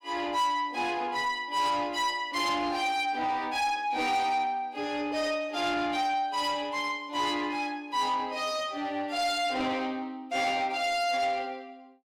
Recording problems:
distortion; soft clipping, signal-to-distortion ratio 11 dB

